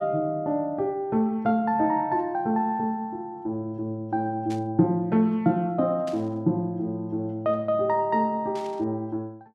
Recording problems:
static burst; at 4.5 s, at 6 s and at 8.5 s; peak -13 dB vs average level

